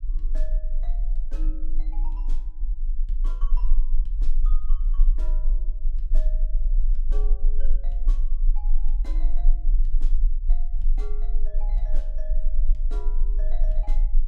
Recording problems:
low-frequency rumble; below 32 Hz, strongest tone 18 Hz, SNR -21 dB

